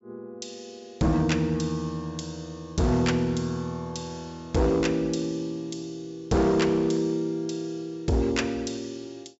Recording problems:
treble missing; nothing above 8 kHz
distorted audio; hard clipping, signal-to-distortion ratio 11 dB

